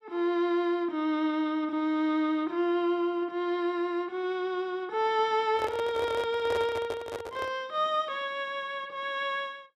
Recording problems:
handling noise; from 5.5 to 7.5 s; peak -2 dB vs average level

